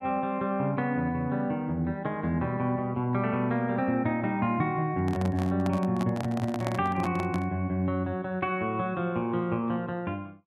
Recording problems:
microphone handling noise; from 5 to 7.5 s; peak 0 dB vs average level

